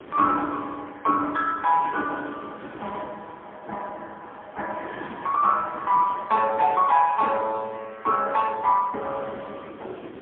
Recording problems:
phone line; 240 Hz to 3.3 kHz, AMR-NB, then MP3
wind on the microphone; below 900 Hz, SNR 18 dB

